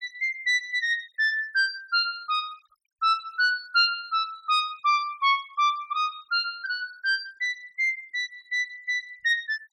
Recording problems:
denoising artefacts; signal-to-artefact ratio 27 dB

